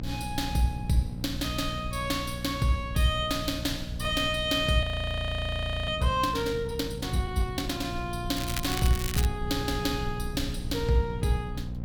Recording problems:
electrical hum; 60 Hz, harmonics up to 540 Hz, SNR 9 dB
low-frequency rumble; below 100 Hz, SNR 12 dB
audio freezing; at 5 s for 1 s
crackling; at 8.5 s; loose cable, SNR 6 dB

